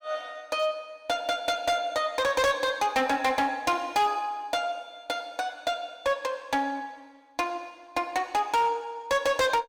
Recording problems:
distorted audio; hard clipping, signal-to-distortion ratio 10 dB

